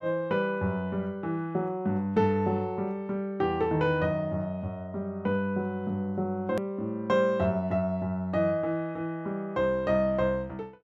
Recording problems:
click at an edit; at 6.5 s

